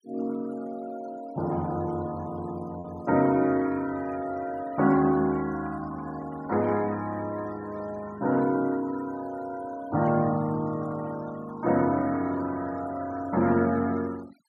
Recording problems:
denoising artefacts; signal-to-artefact ratio 20 dB
lost packets; 0.3% of the sound replaced, filled with repeated pitch periods

